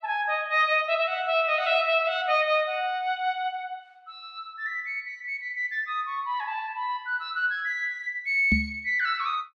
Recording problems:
microphone thump; at 8.5 s; peak +4 dB vs average level

